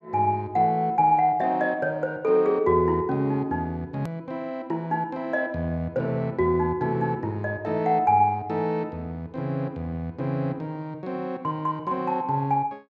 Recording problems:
click at an edit; at 4 s

